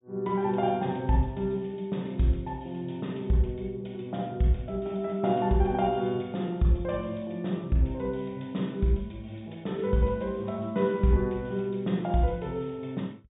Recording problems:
low-pass filter; nothing above 4 kHz

